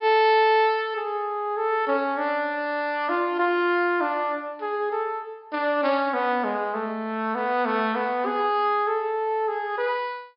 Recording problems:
low-pass filter; nothing above 5.5 kHz

